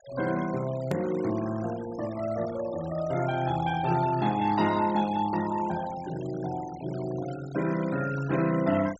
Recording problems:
treble cut off; nothing above 7.9 kHz
denoising artefacts; signal-to-artefact ratio 17 dB
edit click; at 1 s

